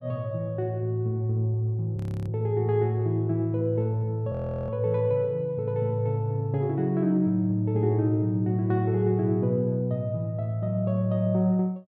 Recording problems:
audio freezing; at 2 s and at 4.5 s

